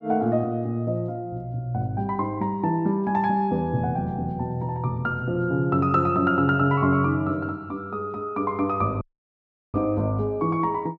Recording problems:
audio cutting out; at 9 s for 0.5 s

